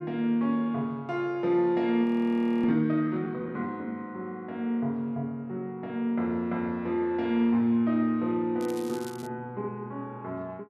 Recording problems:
audio freezing; at 2 s for 0.5 s
crackle; at 8.5 s; loose cable, SNR 20 dB

